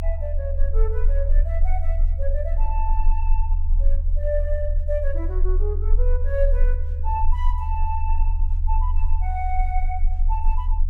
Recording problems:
low-frequency rumble; below 36 Hz, strongest tone 30 Hz, SNR -7 dB

